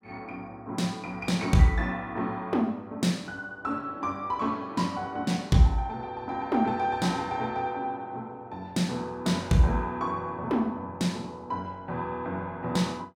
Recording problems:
none

